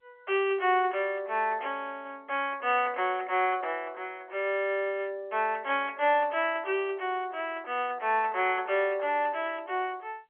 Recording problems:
telephone audio; 300 Hz to 3.3 kHz, G.711

